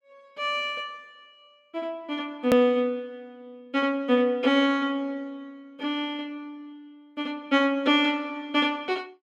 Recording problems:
edit click; at 2.5 s

